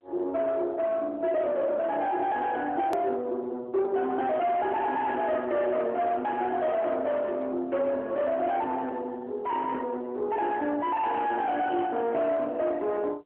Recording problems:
phone line; 260 Hz to 3.4 kHz, AMR-NB
distorted audio; soft clipping, signal-to-distortion ratio 7 dB
click at an edit; at 3 s

